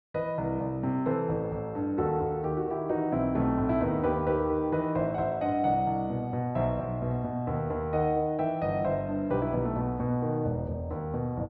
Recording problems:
none

